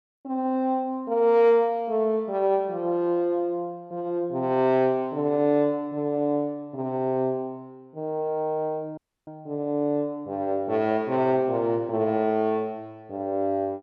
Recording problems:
dropout; at 9 s

